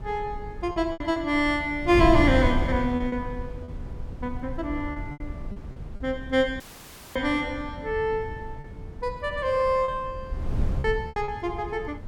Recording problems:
wind on the microphone; below 120 Hz, SNR 8 dB
lost packets; 7% of the sound replaced, filled with repeated pitch periods
audio cutting out; at 6.5 s for 0.5 s; filled with static

